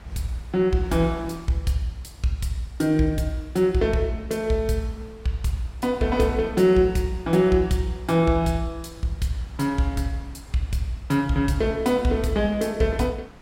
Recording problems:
wind noise; below 900 Hz, SNR 23 dB

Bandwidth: 16 kHz